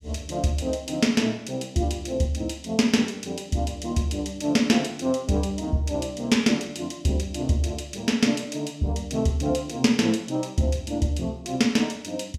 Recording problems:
none

